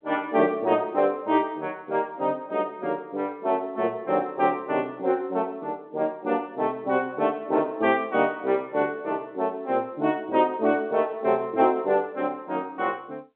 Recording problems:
telephone audio; 170 Hz to 3.5 kHz, G.711

